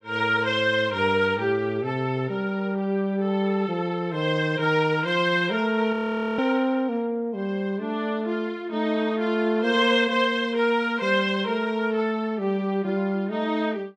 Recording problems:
audio freezing; at 6 s

